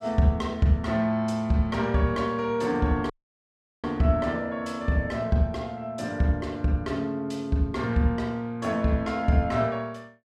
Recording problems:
dropout; at 3 s for 0.5 s

